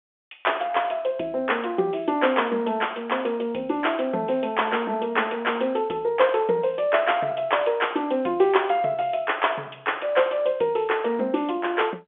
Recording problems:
phone line; 240 Hz to 3.5 kHz, G.711

